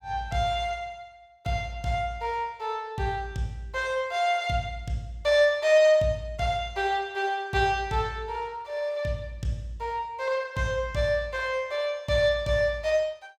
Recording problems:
none

